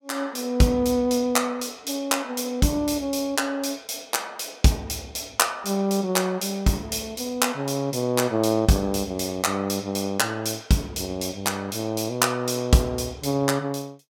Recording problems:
none

